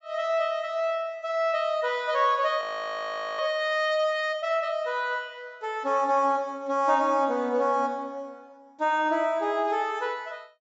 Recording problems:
low-pass filter; nothing above 8 kHz
audio freezing; at 2.5 s for 1 s

